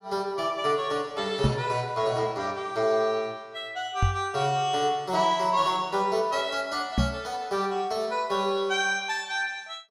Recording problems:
microphone thump; at 1.5 s, at 4 s and at 7 s; peak +6 dB vs average level

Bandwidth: 15.5 kHz